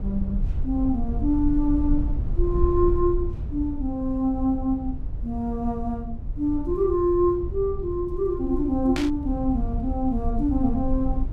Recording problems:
low-frequency rumble; below 74 Hz, SNR 6 dB
static burst; at 9 s; peak -2 dB vs average level

